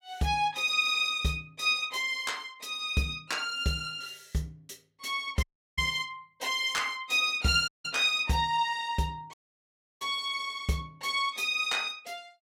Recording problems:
audio cutting out; at 5.5 s, at 7.5 s and at 9.5 s for 0.5 s

